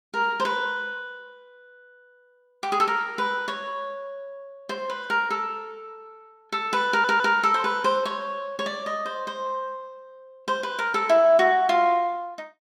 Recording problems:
audio stuttering; at 7 s

